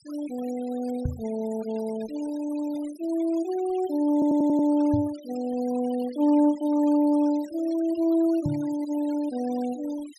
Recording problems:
noise reduction artefacts; signal-to-artefact ratio 22 dB
knock on the microphone; at 1 s, at 5 s and at 8.5 s; peak +1 dB vs average level
audio stuttering; at 4 s

